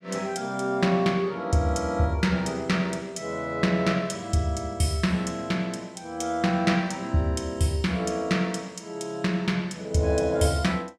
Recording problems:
none

